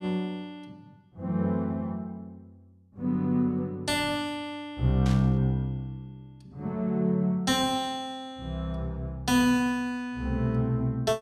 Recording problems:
burst of static; at 5 s; peak -8 dB vs average level

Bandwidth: 13.5 kHz